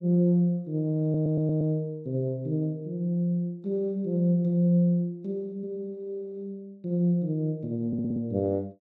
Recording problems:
stutter; at 1 s and at 8 s

